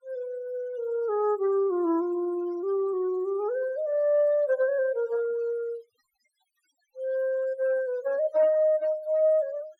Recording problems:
noise reduction artefacts; signal-to-artefact ratio 24 dB

